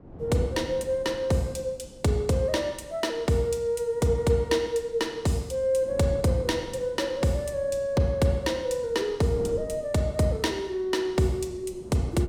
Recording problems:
wind noise; below 380 Hz, SNR 18 dB

